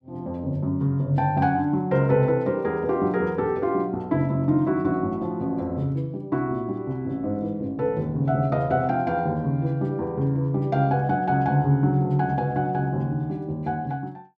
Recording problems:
none

